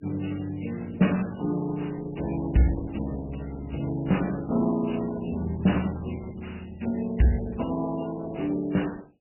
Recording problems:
lossy compression; Opus, then MP3, log-spectral distance 6 dB, nothing above 2.9 kHz

